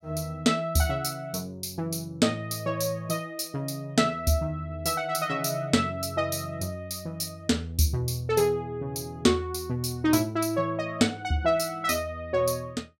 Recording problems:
none

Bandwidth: 16 kHz